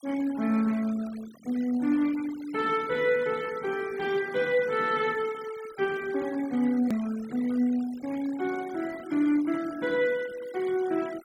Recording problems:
noise reduction artefacts; signal-to-artefact ratio 20 dB
click at an edit; at 7 s

